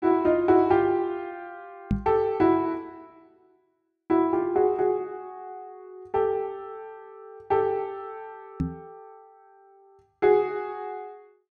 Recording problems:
microphone bump; at 2 s and at 8.5 s; peak +3 dB vs average level

